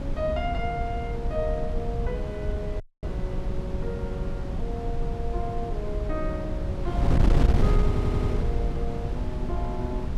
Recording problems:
wind on the microphone; below 120 Hz, SNR -5 dB
dropout; at 3 s
audio stuttering; at 8 s

